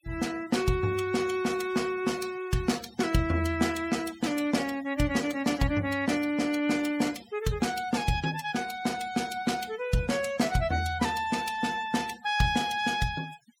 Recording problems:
noise reduction artefacts; signal-to-artefact ratio 16 dB

